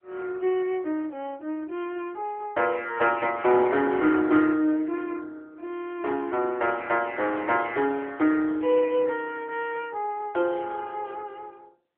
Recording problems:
telephone audio; 260 Hz to 3.2 kHz, AMR-NB

